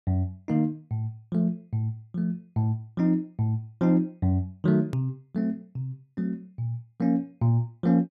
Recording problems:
click at an edit; at 5 s

